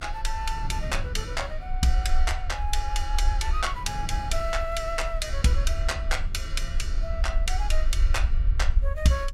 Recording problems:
rumble; below 52 Hz, strongest tone 22 Hz, SNR 0 dB
wind noise; below 120 Hz, SNR 11 dB

